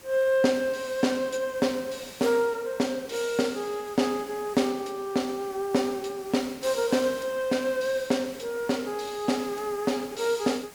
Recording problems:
hiss; slope -3 dB per octave, SNR 19 dB

